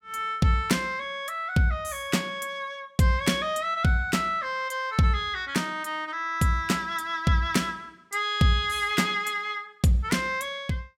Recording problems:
none

